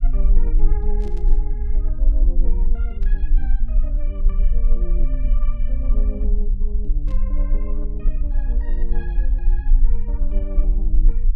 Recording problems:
low-frequency rumble; below 40 Hz, strongest tone 24 Hz, SNR -14 dB
burst of static; at 1 s, at 3 s and at 7 s; peak -10 dB vs average level

